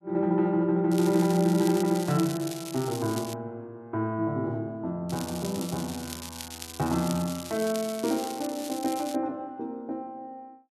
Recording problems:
crackle; from 1 to 3.5 s and from 5 to 9 s; loose cable, SNR 12 dB

